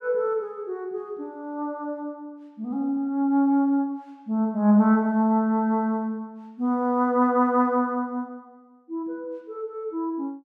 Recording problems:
none

